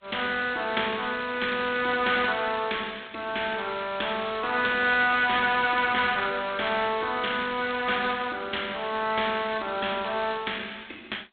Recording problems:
phone line; 260 Hz to 3.9 kHz, G.726

